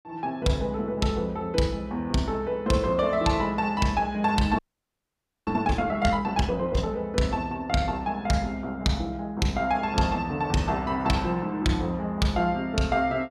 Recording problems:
audio freezing; at 4.5 s for 1 s

